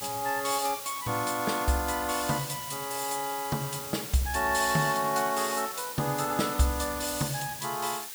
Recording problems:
hiss; slope +3 dB per octave, SNR 8 dB

